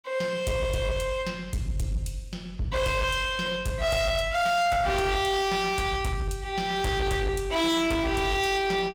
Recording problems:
distorted audio; hard clipping, uneven, signal-to-distortion ratio 7 dB

